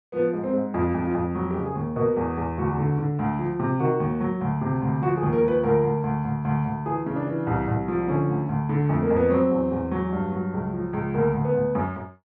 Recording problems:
none

